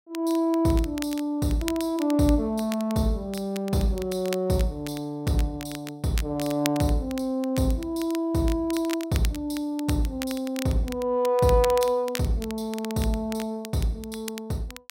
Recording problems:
crackling; vinyl, SNR 14 dB

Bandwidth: 16 kHz